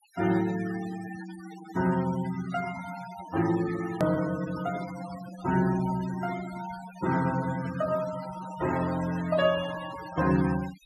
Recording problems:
noise reduction artefacts; signal-to-artefact ratio 13 dB
click at an edit; at 4 s

